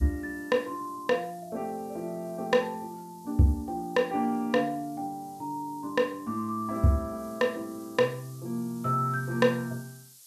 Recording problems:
hiss; SNR 24 dB

